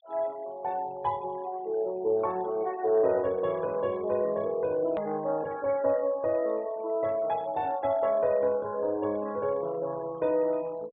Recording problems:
treble cut off; nothing above 4 kHz
denoising artefacts; signal-to-artefact ratio 23 dB
edit click; at 5 s

